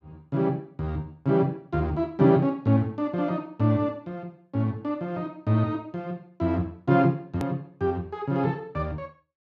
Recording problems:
click at an edit; at 7.5 s

